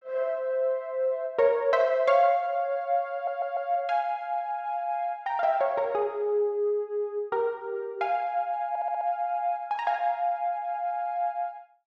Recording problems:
audio stuttering; at 3 s and at 8.5 s

